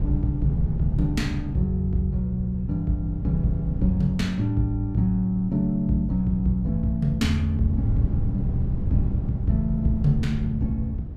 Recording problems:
wind noise; below 130 Hz, SNR 7 dB

